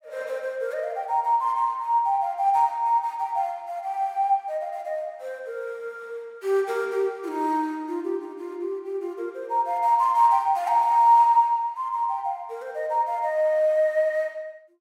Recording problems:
none

